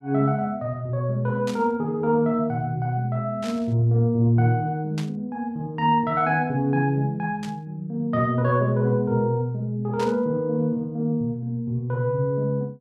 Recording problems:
burst of static; 5 times, first at 1.5 s; peak -9 dB vs average level

